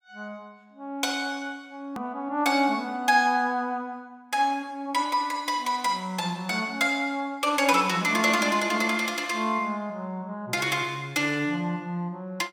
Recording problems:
hard cut with a click; at 2 s

